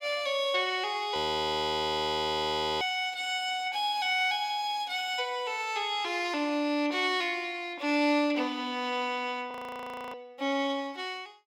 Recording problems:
audio freezing; at 1 s for 1.5 s and at 9.5 s for 0.5 s

